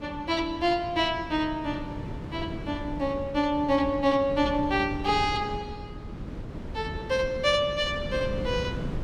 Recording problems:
wind noise; below 280 Hz, SNR 10 dB

